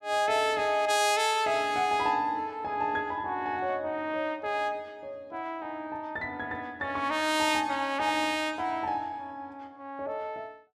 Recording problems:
none

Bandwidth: 15 kHz